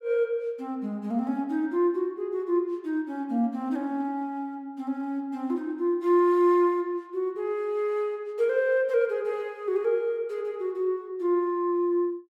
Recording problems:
none

